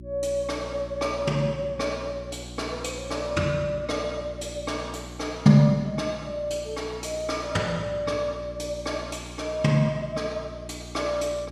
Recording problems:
electrical hum; 60 Hz, harmonics up to 360 Hz, SNR 15 dB

